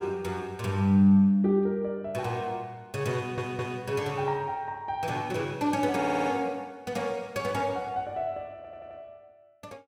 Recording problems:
stutter; at 3 s, at 6 s and at 8.5 s

